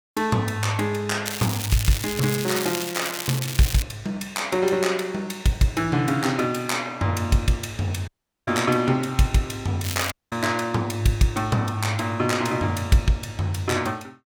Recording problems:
crackle; from 1.5 to 4 s and at 10 s; loose cable, SNR 6 dB
dropout; at 8 s and at 10 s

